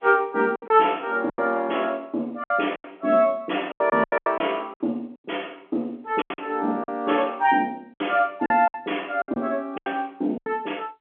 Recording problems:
phone line; 220 Hz to 3.4 kHz, G.711
lost packets; 12% of the sound replaced, filled with silence

